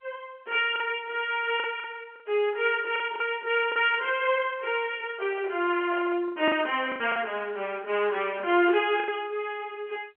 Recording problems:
phone line; 260 Hz to 3.2 kHz, G.711
packet loss; 6% of the sound replaced, filled with the last packet
microphone handling noise; from 5 to 7.5 s; peak -12 dB vs average level

